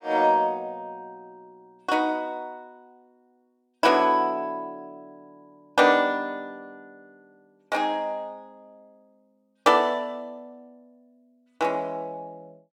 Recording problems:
none

